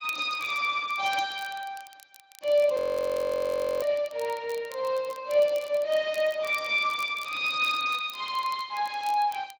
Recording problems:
lossy codec; Speex, log-spectral distance 4 dB
crackle; vinyl, SNR 22 dB
frozen audio; at 3 s for 1 s

